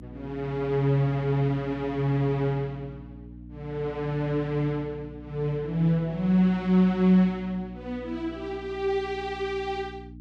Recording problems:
hum; 60 Hz, harmonics up to 300 Hz, SNR 17 dB

